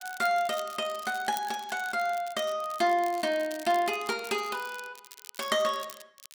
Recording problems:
crackling; vinyl, SNR 17 dB

